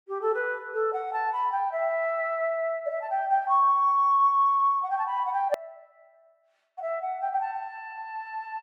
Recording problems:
click at an edit; at 5.5 s

